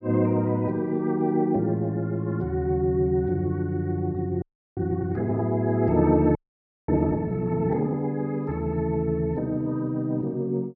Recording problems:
frozen audio; at 4.5 s and at 6.5 s for 0.5 s

